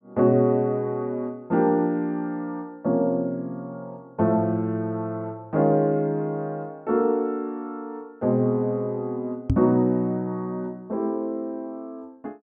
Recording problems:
microphone thump; at 9.5 s; peak +5 dB vs average level

